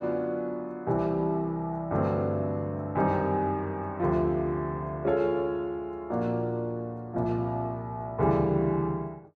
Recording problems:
none

